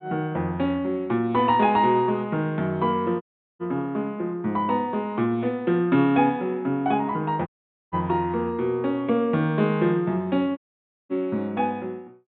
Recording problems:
treble missing; nothing above 4 kHz
audio cutting out; at 3 s, at 7.5 s and at 11 s for 0.5 s

